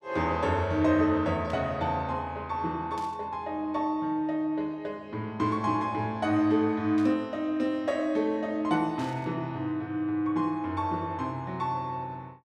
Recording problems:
burst of static; 4 times, first at 1.5 s; peak -14 dB vs average level

